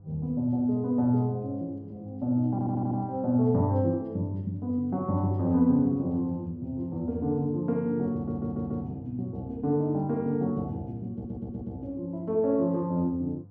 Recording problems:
electrical hum; 50 Hz, harmonics up to 700 Hz, SNR 21 dB
audio stuttering; at 2.5 s, at 8 s and at 11 s

